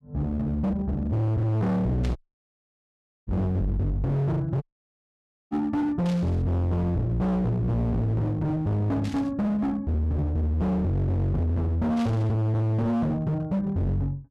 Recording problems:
distorted audio; hard clipping, signal-to-distortion ratio 6 dB
burst of static; 4 times, first at 2 s; peak -10 dB vs average level
audio cutting out; at 2 s for 1 s and at 4.5 s for 1 s

